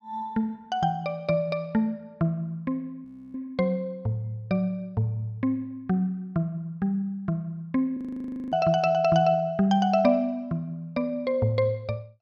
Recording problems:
audio freezing; at 3 s and at 8 s for 0.5 s

